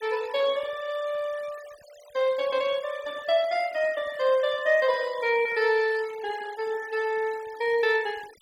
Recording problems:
denoising artefacts; signal-to-artefact ratio 21 dB

